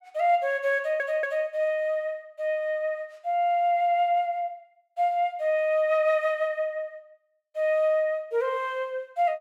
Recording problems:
stutter; at 1 s

